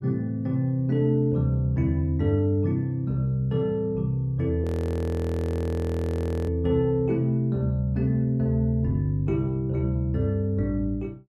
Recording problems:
frozen audio; at 4.5 s for 2 s

